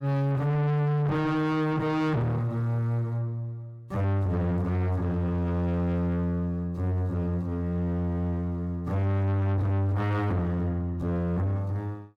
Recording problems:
distorted audio; soft clipping, signal-to-distortion ratio 7 dB

